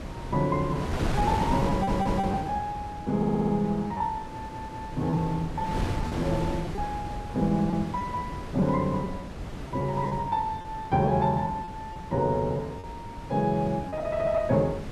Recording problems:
wind noise; below 460 Hz, SNR 7 dB
lost packets; 6% of the sound replaced, filled with repeated pitch periods
audio stuttering; at 1.5 s, at 3 s and at 4.5 s

